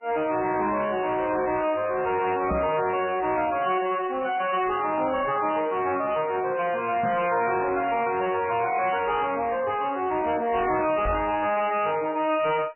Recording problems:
lossy compression; MP3, log-spectral distance 5 dB, nothing above 2.8 kHz
distorted audio; soft clipping, signal-to-distortion ratio 10 dB
microphone bump; at 2.5 s, at 7 s and at 11 s; peak +2 dB vs average level

